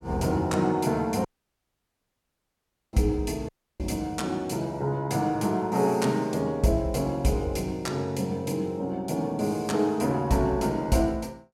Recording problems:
dropout; at 1.5 s for 1.5 s and at 3.5 s

